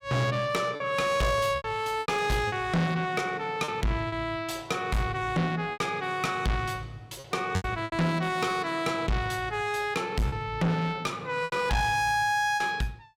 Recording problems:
distorted audio; soft clipping, signal-to-distortion ratio 8 dB
lost packets; 6% of the sound replaced, filled with repeated pitch periods

